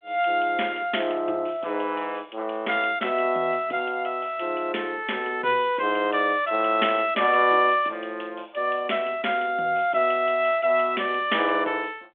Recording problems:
phone line; 260 Hz to 3.5 kHz, G.726

